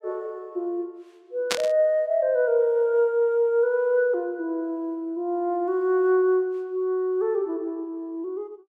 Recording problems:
static burst; at 1.5 s; peak +4 dB vs average level

